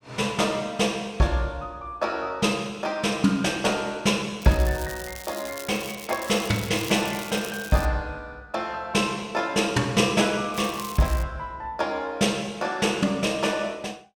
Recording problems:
crackling; from 4.5 to 8 s and at 11 s; loose cable, SNR 14 dB

